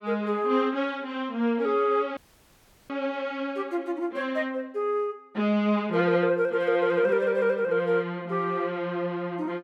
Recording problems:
audio cutting out; at 2 s for 0.5 s

